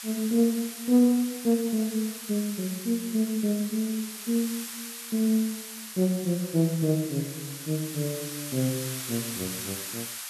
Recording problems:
hiss; SNR 9 dB

